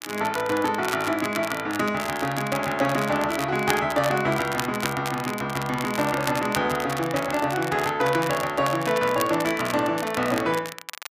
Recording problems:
crackle; vinyl, SNR 11 dB

